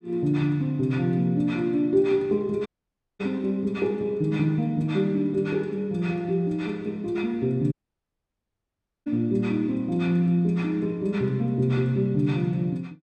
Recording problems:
audio cutting out; at 2.5 s for 0.5 s and at 7.5 s for 1.5 s

